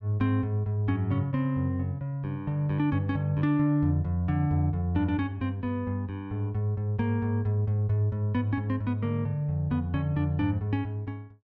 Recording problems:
none

